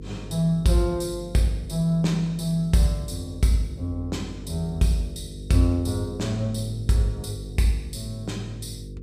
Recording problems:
hum; 50 Hz, harmonics up to 500 Hz, SNR 14 dB

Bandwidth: 15 kHz